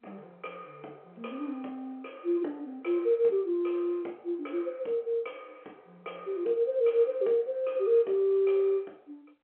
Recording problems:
phone line; 300 Hz to 3.8 kHz, G.711

